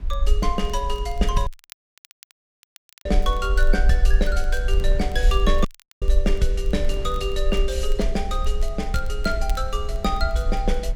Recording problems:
low-frequency rumble; below 46 Hz, SNR -1 dB
wind on the microphone; below 160 Hz, SNR 14 dB
crackle; vinyl, SNR 24 dB
audio cutting out; at 1.5 s for 1.5 s and at 5.5 s

